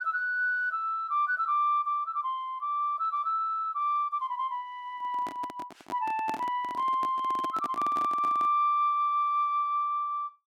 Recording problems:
handling noise; from 5 to 8.5 s; peak -5 dB vs average level

